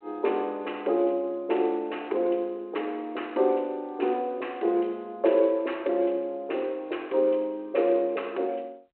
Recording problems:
telephone audio; 300 Hz to 3.1 kHz, G.726

